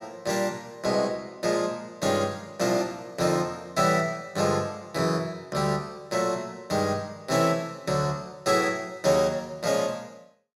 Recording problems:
none

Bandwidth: 16.5 kHz